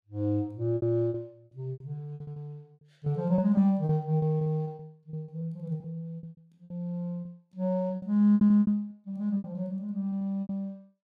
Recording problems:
packet loss; 15% of the sound replaced, filled with repeated pitch periods

